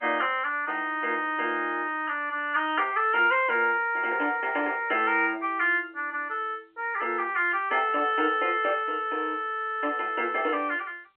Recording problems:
telephone audio; 300 Hz to 3.1 kHz, G.711

